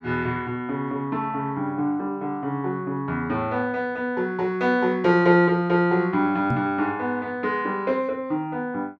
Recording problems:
knock on the microphone; at 6.5 s; peak +3 dB vs average level

